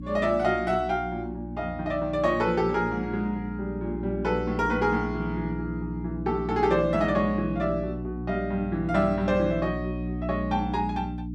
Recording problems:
electrical hum; 60 Hz, harmonics up to 300 Hz, SNR 7 dB

